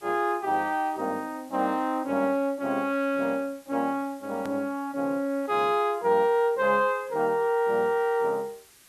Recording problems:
background hiss; slope 0 dB per octave, SNR 27 dB
edit click; at 4.5 s

